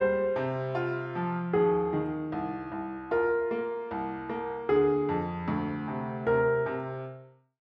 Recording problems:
none

